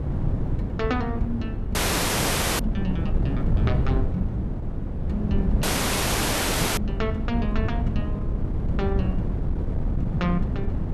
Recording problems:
wind on the microphone; below 160 Hz, SNR -4 dB
audio cutting out; at 2 s for 1 s and at 5.5 s for 1 s

